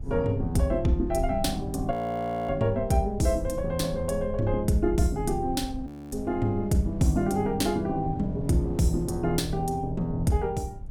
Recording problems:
low-frequency rumble; below 86 Hz, SNR 12 dB
wind noise; below 410 Hz, SNR 21 dB
audio freezing; at 2 s for 0.5 s and at 6 s

